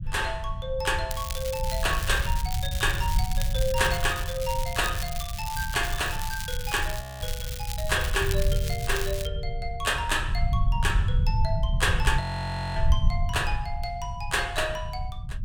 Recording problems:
rumble; below 90 Hz, SNR 2 dB
crackling; from 1 to 2.5 s and from 2.5 to 9.5 s; loose cable, SNR 7 dB
frozen audio; at 7 s and at 12 s for 0.5 s

